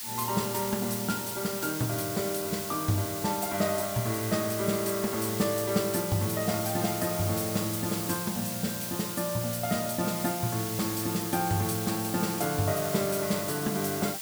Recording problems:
background hiss; slope +3 dB per octave, SNR 4 dB

